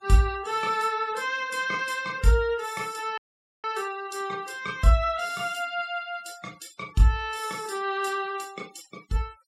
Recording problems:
denoising artefacts; signal-to-artefact ratio 22 dB
dropout; at 3 s

